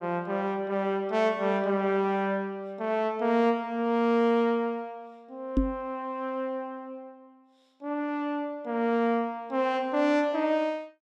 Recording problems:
knock on the microphone; at 5.5 s; peak +7 dB vs average level

